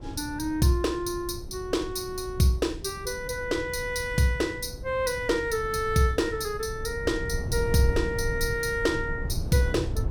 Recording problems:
wind on the microphone; below 130 Hz, SNR 9 dB

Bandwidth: 18 kHz